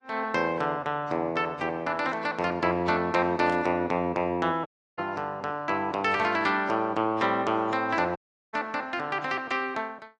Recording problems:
codec artefacts; AAC, log-spectral distance 2 dB
burst of static; at 3.5 s; peak -12 dB vs average level
audio cutting out; at 4.5 s and at 8 s

